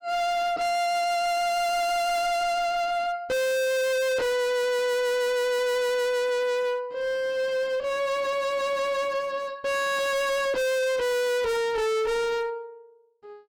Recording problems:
distorted audio; hard clipping, uneven, signal-to-distortion ratio 5 dB

